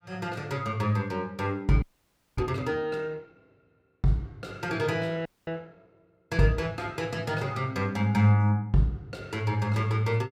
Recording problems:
frozen audio; at 2 s for 0.5 s and at 5.5 s

